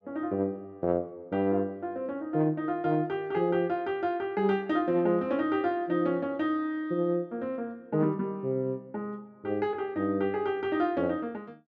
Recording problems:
none

